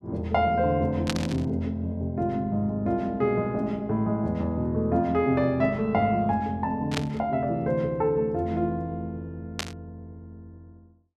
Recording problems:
burst of static; at 1 s, at 7 s and at 9.5 s; peak +1 dB vs average level

